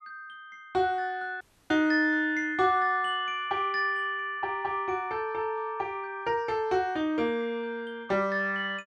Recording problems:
audio cutting out; at 1.5 s

